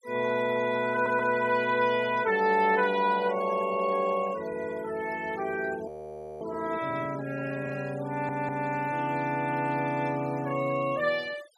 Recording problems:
denoising artefacts; signal-to-artefact ratio 20 dB
audio stuttering; at 1 s and at 8 s
audio freezing; at 6 s for 0.5 s

